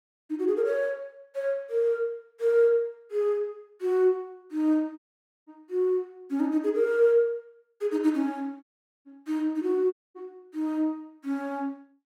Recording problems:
audio cutting out; at 5 s, at 8.5 s and at 10 s

